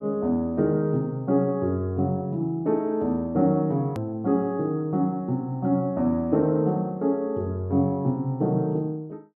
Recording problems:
edit click; at 4 s

